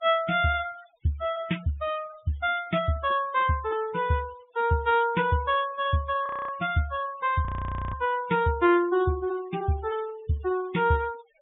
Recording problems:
treble cut off; nothing above 3.7 kHz
denoising artefacts; signal-to-artefact ratio 18 dB
audio freezing; at 6.5 s and at 7.5 s

